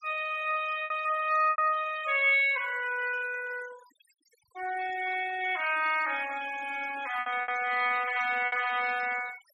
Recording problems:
denoising artefacts; signal-to-artefact ratio 17 dB
lost packets; 4% of the sound replaced, filled with repeated pitch periods

